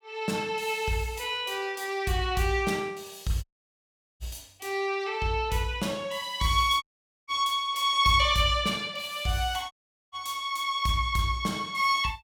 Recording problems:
audio cutting out; at 3.5 s for 1 s, at 7 s and at 9.5 s

